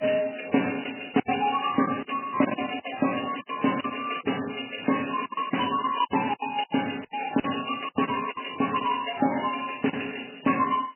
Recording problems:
codec artefacts; MP3, log-spectral distance 12 dB, nothing above 3 kHz
lost packets; 11% of the sound replaced, filled with silence

